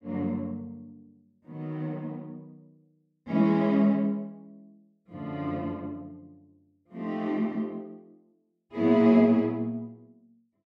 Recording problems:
none

